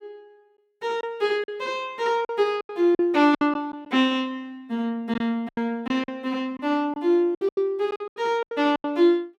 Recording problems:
packet loss; 11% of the sound replaced, filled with silence

